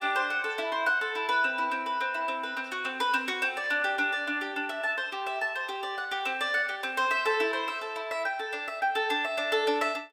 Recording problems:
none

